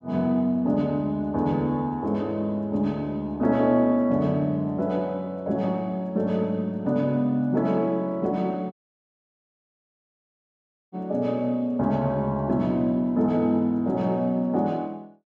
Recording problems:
audio cutting out; at 8.5 s for 2 s

